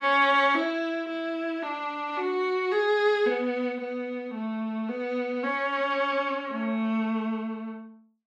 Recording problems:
none

